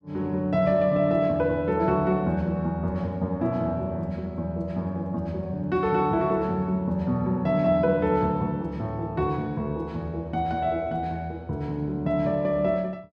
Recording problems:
none

